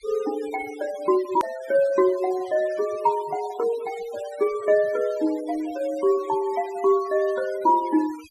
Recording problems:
noise reduction artefacts; signal-to-artefact ratio 19 dB
click at an edit; at 1.5 s

